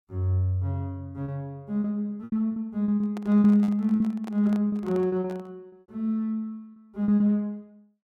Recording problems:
packet loss; 8% of the sound replaced, filled with repeated pitch periods
handling noise; from 3 to 5.5 s; peak -11 dB vs average level

